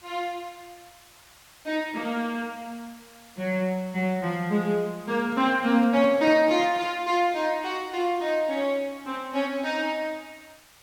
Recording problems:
hiss; SNR 25 dB
handling noise; from 5 to 7 s; peak -11 dB vs average level

